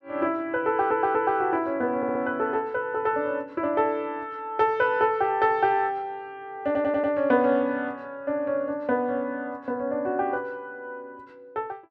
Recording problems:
audio stuttering; at 0.5 s, at 2 s and at 6.5 s

